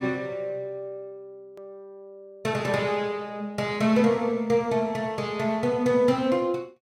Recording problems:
edit click; at 1.5 s

